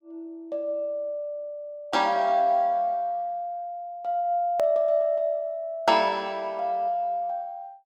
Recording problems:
edit click; at 4.5 s

